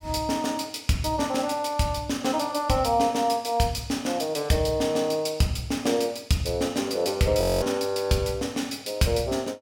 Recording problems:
audio freezing; at 7.5 s

